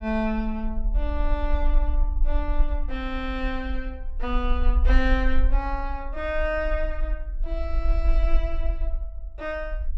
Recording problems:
low-frequency rumble; below 46 Hz, strongest tone 24 Hz, SNR -2 dB

